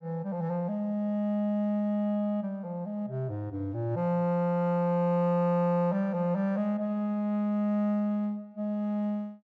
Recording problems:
none

